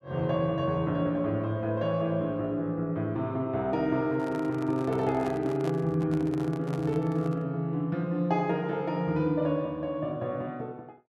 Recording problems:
microphone handling noise; from 4 to 7.5 s; peak -5 dB vs average level

